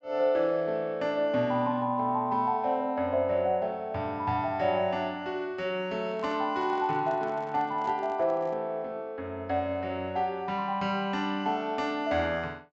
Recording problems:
low-pass filter; nothing above 8 kHz
handling noise; from 6 to 8.5 s; peak -11 dB vs average level

